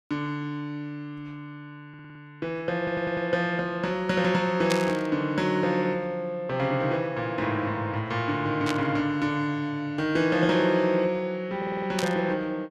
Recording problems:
audio stuttering; at 2 s, at 3 s and at 12 s
static burst; at 4.5 s, at 8.5 s and at 12 s; peak +2 dB vs average level

